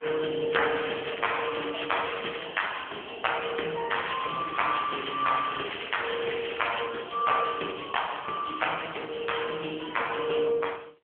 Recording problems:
phone line; 300 Hz to 3.3 kHz, AMR-NB
crackle; from 0.5 to 2.5 s and from 4 to 7 s; loose cable, SNR 9 dB

